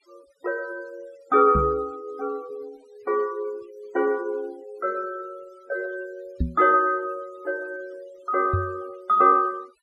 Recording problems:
noise reduction artefacts; signal-to-artefact ratio 26 dB
microphone thump; at 1.5 s, at 6.5 s and at 8.5 s; peak +3 dB vs average level

